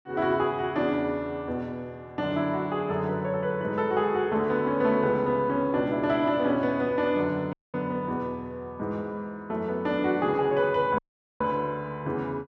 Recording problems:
dropout; at 7.5 s and at 11 s

